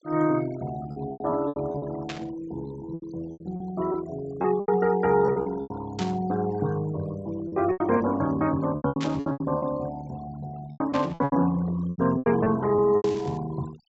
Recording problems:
low-pass filter; nothing above 7.8 kHz
denoising artefacts; signal-to-artefact ratio 18 dB
packet loss; 13% of the sound replaced, filled with repeated pitch periods
static burst; 5 times, first at 2 s; peak -4 dB vs average level

